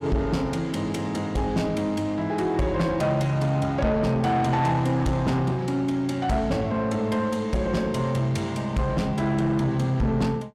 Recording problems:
distorted audio; soft clipping, signal-to-distortion ratio 11 dB

